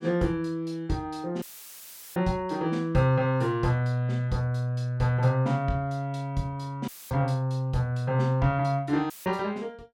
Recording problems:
audio cutting out; at 1.5 s for 0.5 s, at 7 s and at 9 s; filled with static

